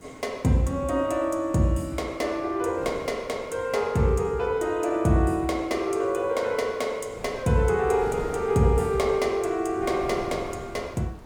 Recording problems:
hiss; SNR 28 dB
wind noise; below 660 Hz, SNR 17 dB

